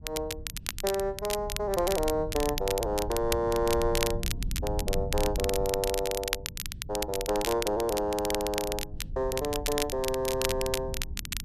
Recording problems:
rumble; below 94 Hz, SNR 9 dB
crackling; vinyl, SNR 5 dB

